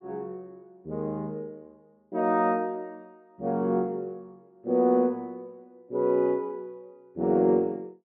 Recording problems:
none

